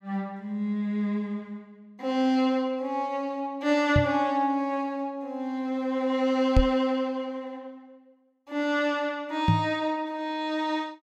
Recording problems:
microphone bump; at 4 s, at 6.5 s and at 9.5 s; peak +8 dB vs average level

